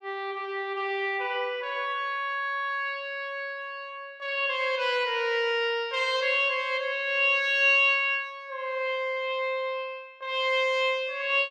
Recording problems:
none

